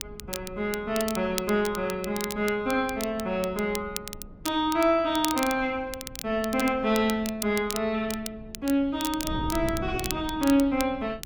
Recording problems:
wind noise; below 210 Hz, SNR 16 dB
crackle; vinyl, SNR 11 dB

